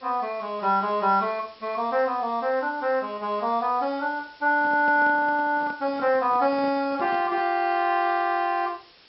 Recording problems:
low-pass filter; nothing above 5.5 kHz
hiss; slope 0 dB per octave, SNR 27 dB
handling noise; from 4.5 to 7.5 s; peak -11 dB vs average level

